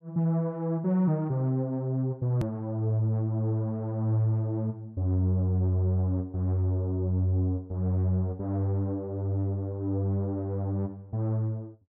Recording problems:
click at an edit; at 2.5 s

